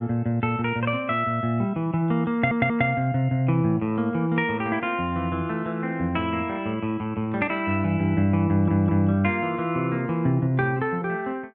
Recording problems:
audio stuttering; at 2.5 s and at 8.5 s

